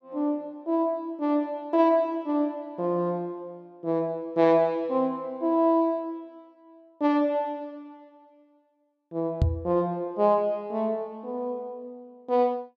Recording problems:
microphone bump; at 9.5 s; peak +7 dB vs average level

